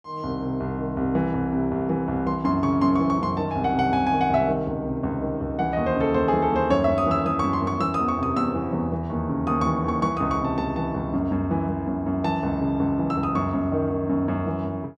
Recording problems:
none

